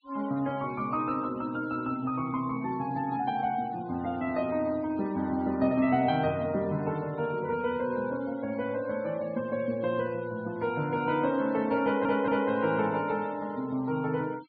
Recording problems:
low-pass filter; nothing above 4.7 kHz
noise reduction artefacts; signal-to-artefact ratio 22 dB
stutter; at 12 s

